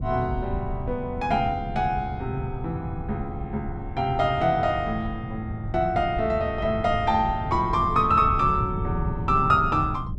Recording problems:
wind on the microphone; below 150 Hz, SNR 8 dB

